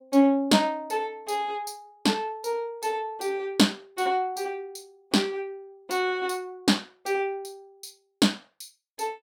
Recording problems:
none

